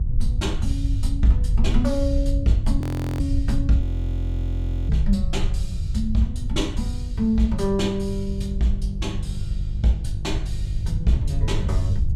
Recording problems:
hum; 50 Hz, harmonics up to 350 Hz, SNR 9 dB
rumble; below 76 Hz, SNR 1 dB
audio freezing; at 3 s and at 4 s for 1 s

